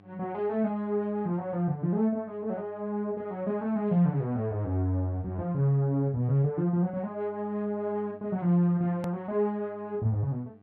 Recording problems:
electrical hum; 50 Hz, harmonics up to 1.2 kHz, SNR 27 dB
hard cut with a click; at 9 s

